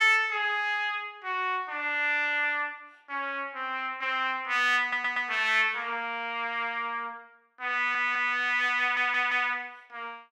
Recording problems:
audio stuttering; at 5 s, at 8 s and at 9 s

